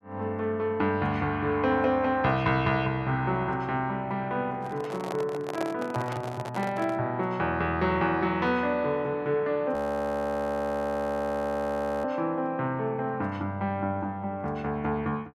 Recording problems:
handling noise; from 4.5 to 7 s; peak -1 dB vs average level
audio freezing; at 9.5 s for 2.5 s

